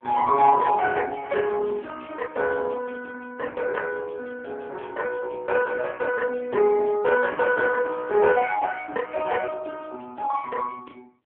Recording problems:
telephone audio; 300 Hz to 2.2 kHz, AMR-NB

